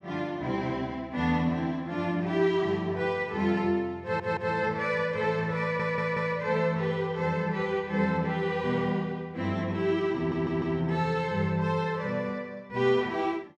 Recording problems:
audio stuttering; at 4 s, at 5.5 s and at 10 s

